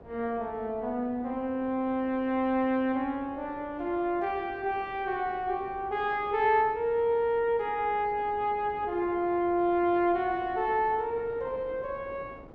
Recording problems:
wind noise; below 580 Hz, SNR 20 dB

